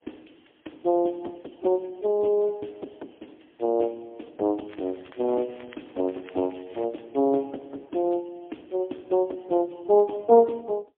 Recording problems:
phone line; 240 Hz to 3.4 kHz, AMR-NB, then MP3
crackling; from 4.5 to 7 s; loose cable, SNR 27 dB

